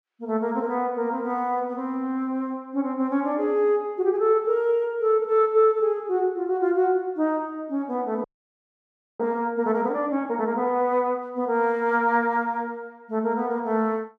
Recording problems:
audio freezing; at 8 s for 1 s

